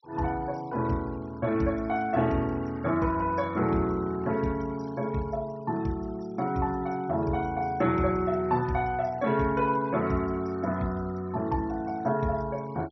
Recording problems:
low-pass filter; nothing above 5.8 kHz
denoising artefacts; signal-to-artefact ratio 25 dB

